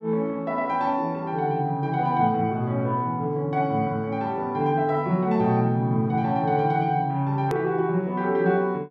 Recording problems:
edit click; at 7.5 s

